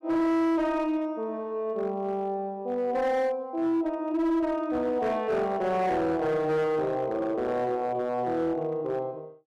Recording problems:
distorted audio; hard clipping, signal-to-distortion ratio 11 dB

